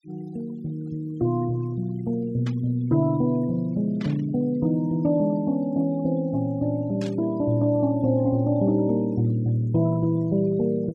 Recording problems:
noise reduction artefacts; signal-to-artefact ratio 27 dB
burst of static; at 2.5 s, at 4 s and at 7 s; peak -12 dB vs average level

